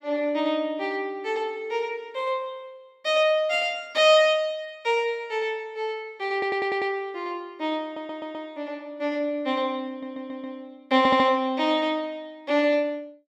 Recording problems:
stutter; 4 times, first at 6.5 s

